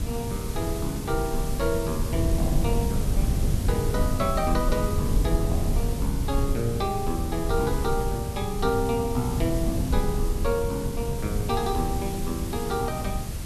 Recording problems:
background hiss; slope -1 dB per octave, SNR 10 dB
rumble; below 120 Hz, SNR 0 dB

